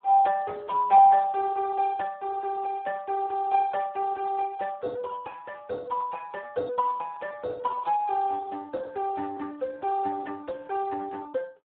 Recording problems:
telephone audio; 300 Hz to 2.3 kHz, Speex

